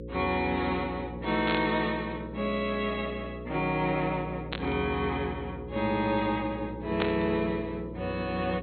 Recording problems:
treble cut off; nothing above 4.3 kHz
electrical hum; 60 Hz, harmonics up to 540 Hz, SNR 10 dB
static burst; at 1.5 s, at 4.5 s and at 7 s; peak +3 dB vs average level

